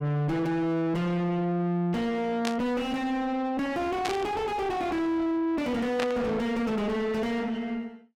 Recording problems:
distorted audio; soft clipping, signal-to-distortion ratio 5 dB
static burst; at 2.5 s, at 4 s and at 6 s; peak 0 dB vs average level

